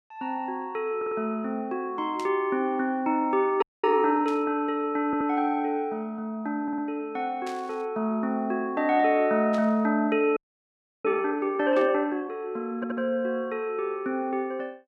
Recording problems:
audio stuttering; 4 times, first at 1 s
static burst; 5 times, first at 2 s; peak -10 dB vs average level
audio freezing; at 3.5 s and at 10 s for 0.5 s

